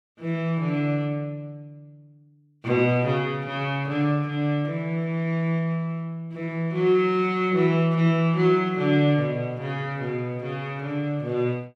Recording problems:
none

